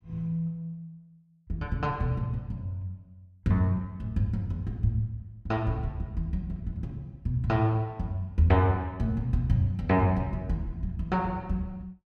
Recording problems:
none

